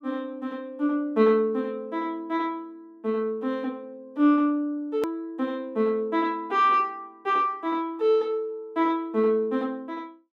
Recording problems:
hard cut with a click; at 5 s

